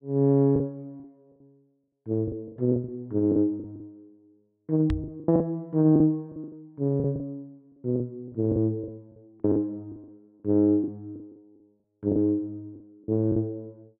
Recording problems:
lost packets; 13% of the sound replaced, filled with the last packet
knock on the microphone; at 5 s; peak 0 dB vs average level

